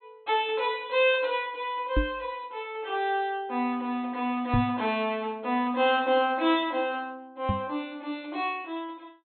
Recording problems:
low-pass filter; nothing above 4.2 kHz
knock on the microphone; at 2 s, at 4.5 s and at 7.5 s; peak +5 dB vs average level

